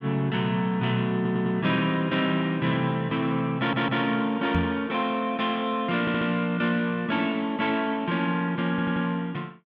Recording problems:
stutter; 4 times, first at 1 s
knock on the microphone; at 4.5 s; peak +3 dB vs average level

